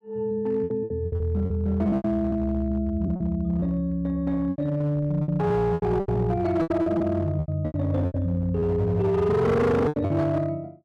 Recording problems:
distortion; hard clipping, signal-to-distortion ratio 10 dB
packet loss; 13% of the sound replaced, filled with repeated pitch periods

